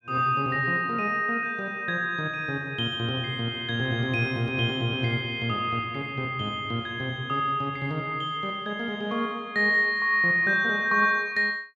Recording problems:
none

